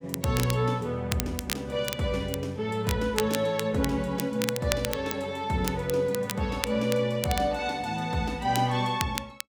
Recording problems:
crackle; vinyl, SNR 8 dB

